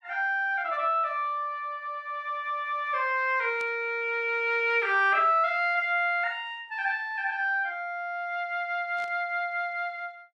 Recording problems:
burst of static; at 3.5 s and at 9 s; peak -15 dB vs average level

